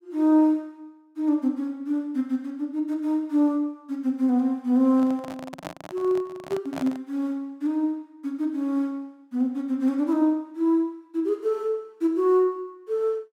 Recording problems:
handling noise; from 5 to 7 s; peak -5 dB vs average level

